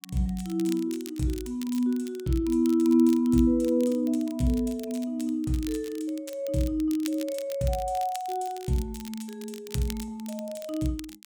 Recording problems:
crackling; vinyl, SNR 18 dB

